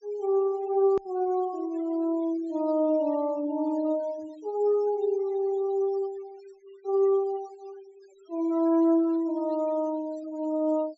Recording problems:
low-pass filter; nothing above 8 kHz
noise reduction artefacts; signal-to-artefact ratio 27 dB
click at an edit; at 1 s

